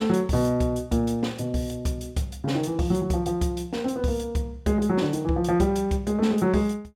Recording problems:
none

